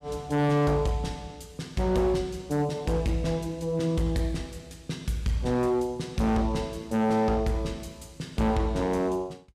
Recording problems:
distorted audio; hard clipping, signal-to-distortion ratio 10 dB

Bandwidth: 14.5 kHz